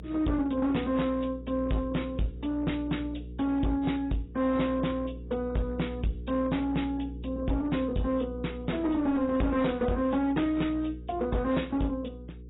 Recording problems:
lossy codec; AAC, log-spectral distance 3 dB, nothing above 3.8 kHz
distorted audio; hard clipping, uneven, signal-to-distortion ratio 10 dB
mains hum; 60 Hz, harmonics up to 480 Hz, SNR 13 dB

